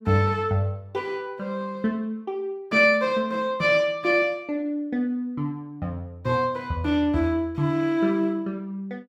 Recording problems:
none

